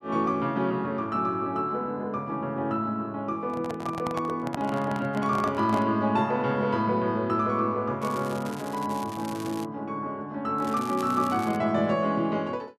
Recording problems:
microphone handling noise; from 3.5 to 6 s; peak -2 dB vs average level
crackling; from 8 to 9.5 s and from 11 to 12 s; loose cable, SNR 18 dB

